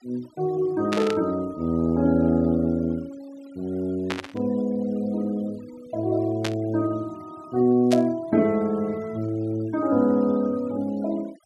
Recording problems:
noise reduction artefacts; signal-to-artefact ratio 26 dB
static burst; 4 times, first at 1 s; peak -1 dB vs average level

